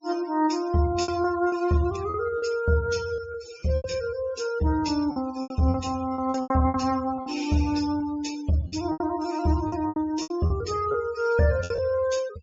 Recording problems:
treble cut off; nothing above 7.3 kHz
noise reduction artefacts; signal-to-artefact ratio 17 dB
packet loss; 10% of the sound replaced, filled with repeated pitch periods

